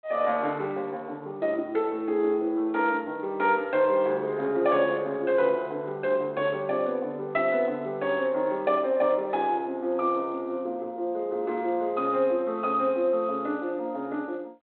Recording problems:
telephone audio; 220 Hz to 3.3 kHz, G.726

